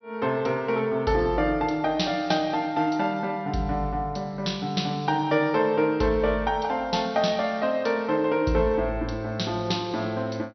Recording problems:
low-pass filter; nothing above 5.9 kHz

